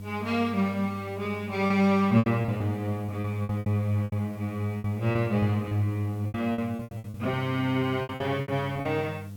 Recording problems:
hum; 50 Hz, harmonics up to 500 Hz, SNR 12 dB
background hiss; SNR 28 dB
lost packets; 13% of the sound replaced, filled with repeated pitch periods

